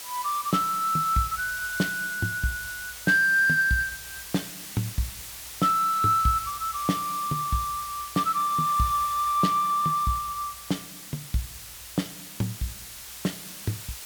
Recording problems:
background hiss; slope +2 dB per octave, SNR 12 dB

